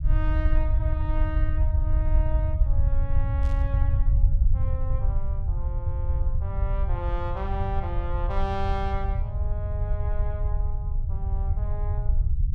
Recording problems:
rumble; below 76 Hz, SNR -10 dB
burst of static; at 3.5 s; peak -11 dB vs average level

